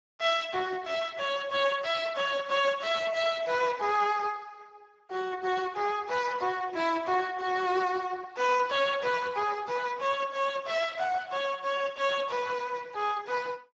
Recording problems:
codec artefacts; Speex, log-spectral distance 5 dB

